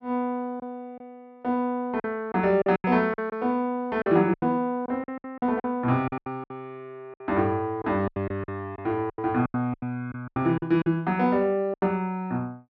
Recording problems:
packet loss; 12% of the sound replaced, filled with silence

